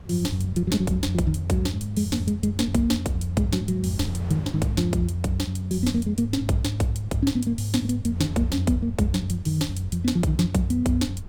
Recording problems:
low-frequency rumble; below 140 Hz, SNR 17 dB
wind on the microphone; below 440 Hz, SNR 22 dB

